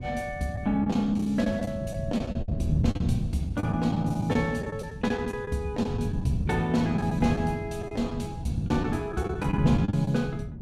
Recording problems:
wind noise; below 180 Hz, SNR 5 dB
lost packets; 10% of the sound replaced, filled with the last packet

